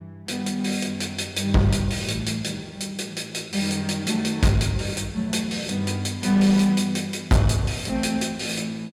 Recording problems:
distorted audio; hard clipping, uneven, signal-to-distortion ratio 11 dB

